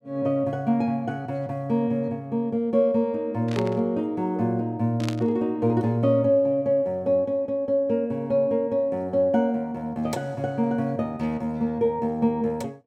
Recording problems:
static burst; at 3.5 s and at 5 s; peak -5 dB vs average level

